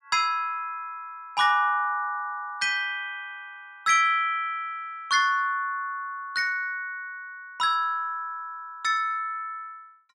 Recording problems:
none

